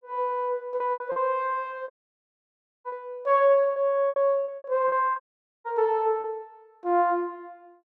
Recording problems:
lost packets; 10% of the sound replaced, filled with repeated pitch periods
dropout; at 2 s for 1 s and at 5 s

